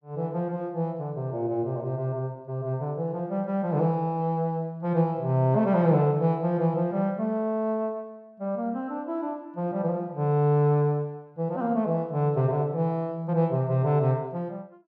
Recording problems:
none

